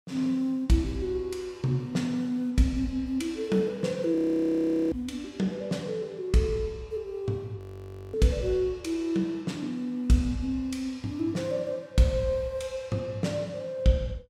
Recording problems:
audio freezing; at 4 s for 1 s and at 7.5 s for 0.5 s

